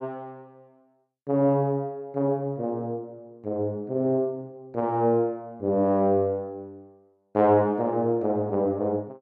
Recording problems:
none

